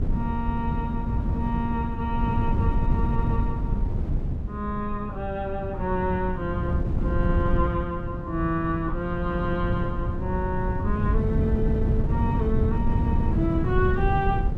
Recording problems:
wind noise; below 140 Hz, SNR -2 dB

